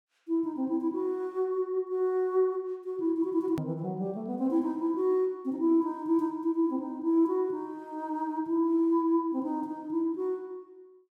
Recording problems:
edit click; at 3.5 s

